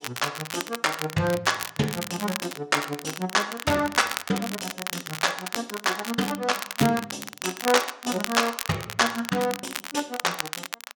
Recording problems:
crackle; vinyl, SNR 7 dB

